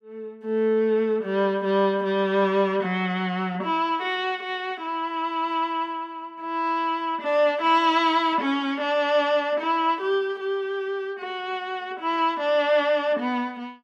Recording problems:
none

